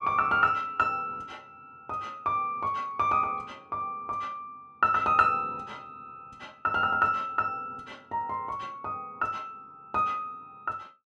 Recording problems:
none

